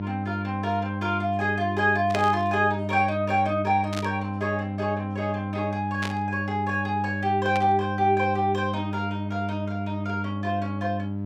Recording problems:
hum; 50 Hz, harmonics up to 700 Hz, SNR 4 dB
burst of static; 4 times, first at 2 s; peak -3 dB vs average level

